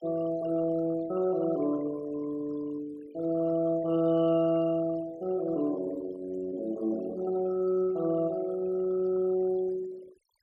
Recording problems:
noise reduction artefacts; signal-to-artefact ratio 21 dB

